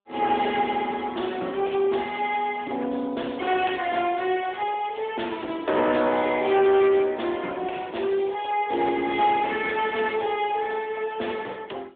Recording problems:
telephone audio; 260 Hz to 3.6 kHz, AMR-NB
distorted audio; soft clipping, signal-to-distortion ratio 12 dB

